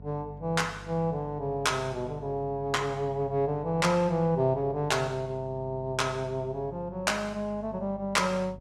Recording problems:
mains hum; 50 Hz, harmonics up to 500 Hz, SNR 17 dB

